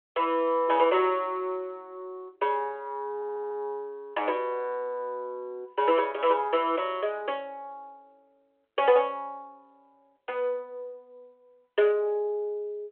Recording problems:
telephone audio; 300 Hz to 3.4 kHz, G.726
audio stuttering; at 3 s

